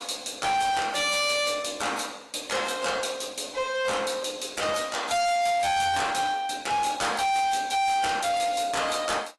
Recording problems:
lossy codec; AAC, log-spectral distance 5 dB, nothing above 11.6 kHz
distortion; hard clipping, signal-to-distortion ratio 6 dB

